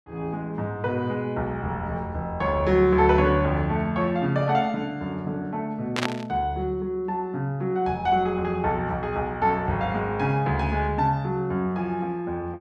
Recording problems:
burst of static; at 6 s; peak +1 dB vs average level

